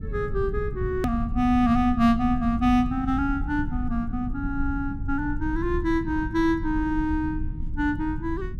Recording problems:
low-frequency rumble; below 110 Hz, SNR 7 dB
edit click; at 1 s

